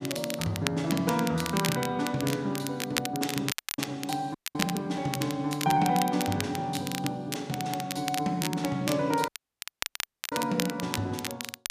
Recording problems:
crackling; vinyl, SNR 6 dB
dropout; at 3.5 s, at 4.5 s and at 9.5 s for 1 s

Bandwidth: 14.5 kHz